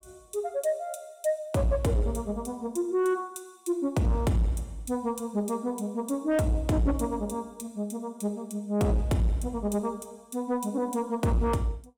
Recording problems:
distorted audio; soft clipping, signal-to-distortion ratio 11 dB

